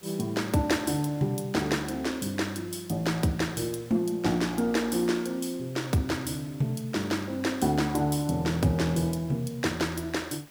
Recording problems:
hiss; slope -2 dB per octave, SNR 24 dB

